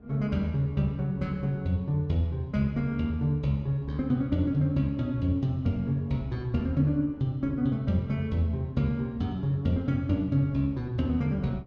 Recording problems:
wind on the microphone; below 290 Hz, SNR 24 dB

